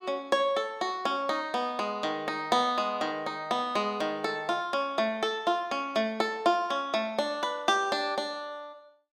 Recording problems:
none

